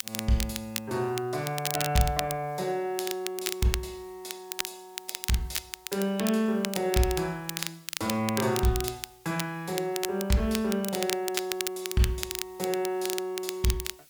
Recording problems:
background hiss; SNR 26 dB
crackling; vinyl, SNR 5 dB

